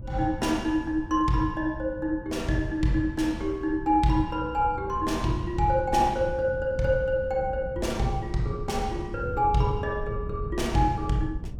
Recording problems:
low-frequency rumble; below 120 Hz, SNR 11 dB

